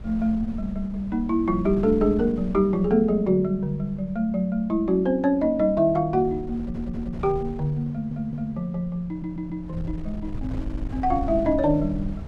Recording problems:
wind noise; below 110 Hz, SNR 14 dB
stutter; 4 times, first at 6.5 s

